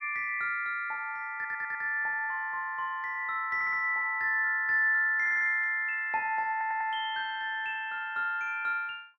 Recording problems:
audio stuttering; 4 times, first at 1.5 s

